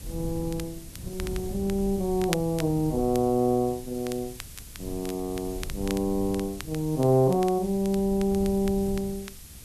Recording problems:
hiss; slope +2 dB per octave, SNR 19 dB
wind noise; below 130 Hz, SNR 15 dB
crackle; vinyl, SNR 17 dB

